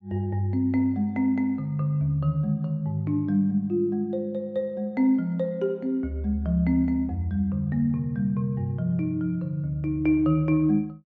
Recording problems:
none

